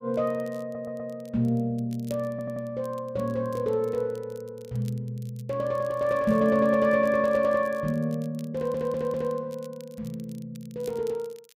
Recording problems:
crackling; vinyl, SNR 27 dB
stutter; at 0.5 s, at 2.5 s and at 8.5 s

